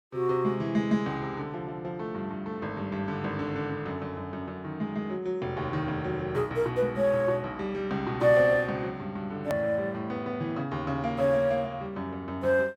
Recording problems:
click at an edit; at 9.5 s

